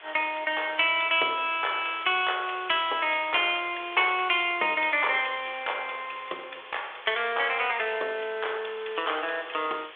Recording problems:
telephone audio; 340 Hz to 3.5 kHz, G.726
hiss; SNR 18 dB

